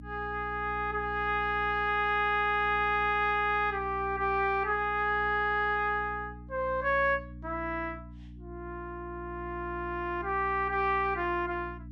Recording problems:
hum; 60 Hz, harmonics up to 300 Hz, SNR 16 dB

